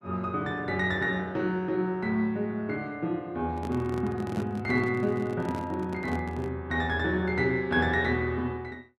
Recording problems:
handling noise; from 3.5 to 6.5 s; peak -5 dB vs average level

